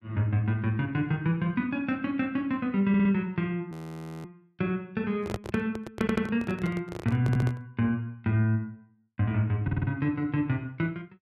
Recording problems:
audio stuttering; 4 times, first at 3 s
audio freezing; at 3.5 s for 0.5 s
handling noise; from 5 to 7.5 s; peak 0 dB vs average level

